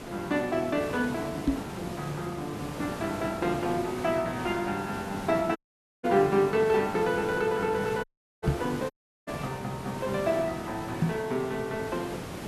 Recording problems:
hiss; slope -6 dB per octave, SNR 9 dB
knock on the microphone; at 1.5 s, at 8.5 s and at 11 s; peak +8 dB vs average level
dropout; at 5.5 s, at 8 s and at 9 s

